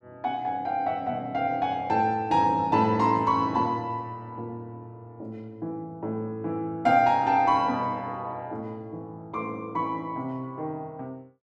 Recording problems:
none

